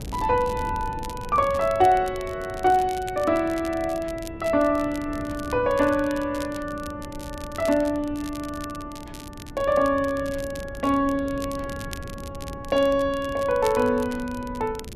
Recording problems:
wind noise; below 260 Hz, SNR 15 dB
crackle; vinyl, SNR 20 dB

